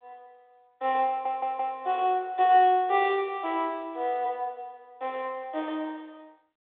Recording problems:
telephone audio; 320 Hz to 3.9 kHz, G.726
stutter; at 1 s

